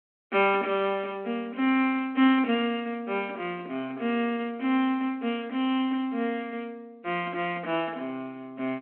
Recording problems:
phone line; 220 Hz to 3.3 kHz, G.726

